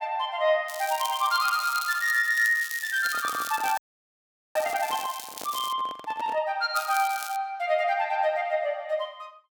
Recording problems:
crackle; from 0.5 to 5.5 s and at 7 s; loose cable, SNR 11 dB
handling noise; from 3 to 6.5 s; peak -11 dB vs average level
frozen audio; at 4 s for 1 s

